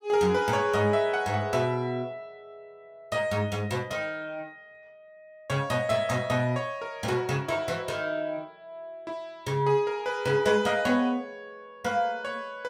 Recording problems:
none

